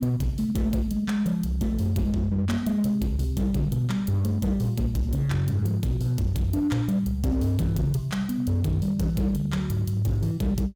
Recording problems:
distortion; hard clipping, signal-to-distortion ratio 11 dB

